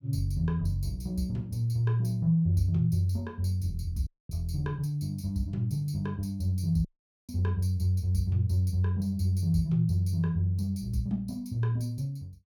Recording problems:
dropout; at 4 s and at 7 s

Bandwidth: 18 kHz